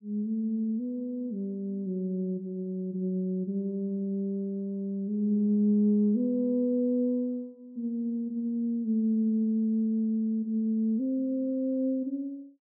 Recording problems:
none

